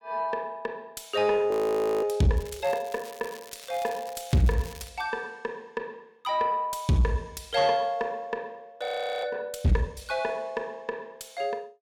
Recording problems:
distorted audio; soft clipping, signal-to-distortion ratio 10 dB
frozen audio; at 1.5 s for 0.5 s and at 9 s
crackling; from 2.5 to 5 s; loose cable, SNR 18 dB

